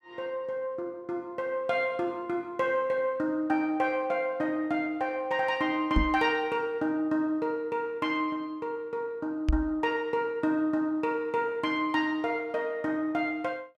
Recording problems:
microphone bump; at 6 s and at 9.5 s; peak +6 dB vs average level

